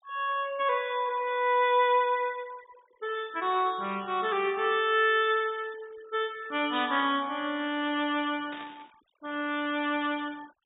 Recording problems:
treble missing; nothing above 4 kHz
denoising artefacts; signal-to-artefact ratio 24 dB
static burst; at 7 s and at 8.5 s; peak -11 dB vs average level

